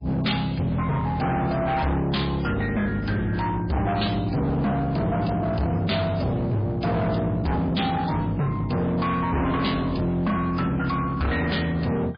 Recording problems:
lossy codec; MP3, log-spectral distance 4 dB, nothing above 4.4 kHz
distorted audio; hard clipping, signal-to-distortion ratio 6 dB

